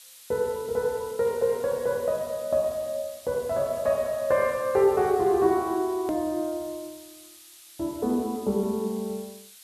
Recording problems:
background hiss; slope +5 dB per octave, SNR 20 dB
hard cut with a click; at 6 s

